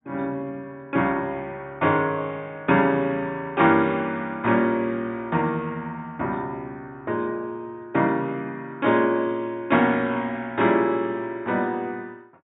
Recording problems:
low-pass filter; nothing above 4 kHz

